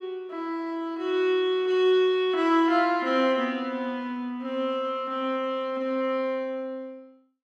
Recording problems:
none

